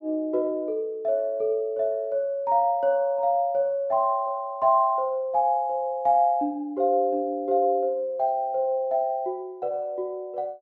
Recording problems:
none

